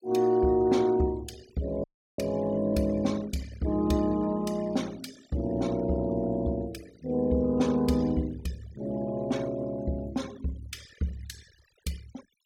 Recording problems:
noise reduction artefacts; signal-to-artefact ratio 22 dB
audio cutting out; at 2 s

